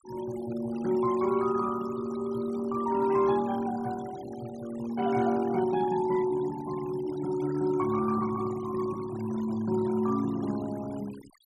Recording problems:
noise reduction artefacts; signal-to-artefact ratio 19 dB

